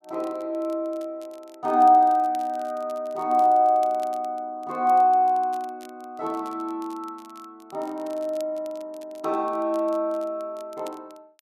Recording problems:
crackle; vinyl, SNR 29 dB

